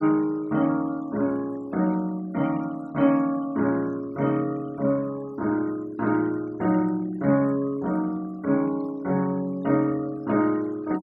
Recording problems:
noise reduction artefacts; signal-to-artefact ratio 23 dB

